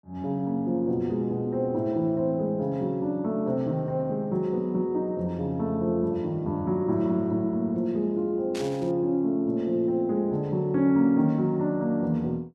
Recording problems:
static burst; at 8.5 s; peak -8 dB vs average level

